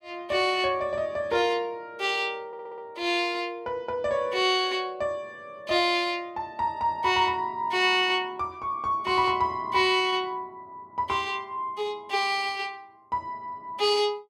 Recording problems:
audio stuttering; at 2.5 s

